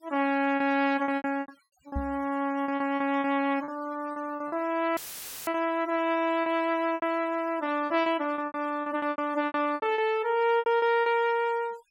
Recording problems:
noise reduction artefacts; signal-to-artefact ratio 23 dB
packet loss; 14% of the sound replaced, filled with repeated pitch periods
microphone thump; at 2 s; peak -2 dB vs average level
audio cutting out; at 5 s for 0.5 s; filled with static

